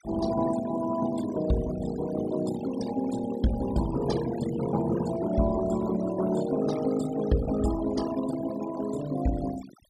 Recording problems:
denoising artefacts; signal-to-artefact ratio 13 dB

